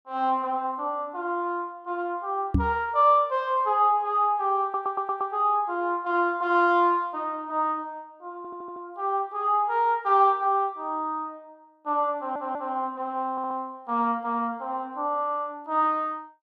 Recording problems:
knock on the microphone; at 2.5 s; peak +6 dB vs average level
stutter; 4 times, first at 4.5 s

